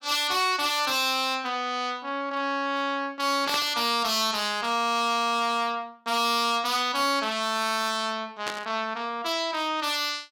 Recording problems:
distortion; hard clipping, signal-to-distortion ratio 11 dB
static burst; at 3.5 s and at 8.5 s; peak -3 dB vs average level

